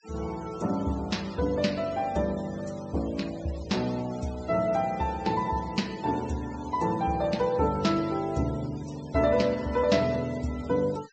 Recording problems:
treble cut off; nothing above 8 kHz
denoising artefacts; signal-to-artefact ratio 19 dB

